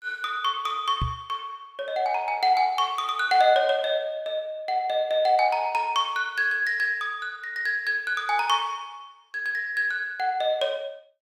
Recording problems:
microphone thump; at 1 s; peak 0 dB vs average level

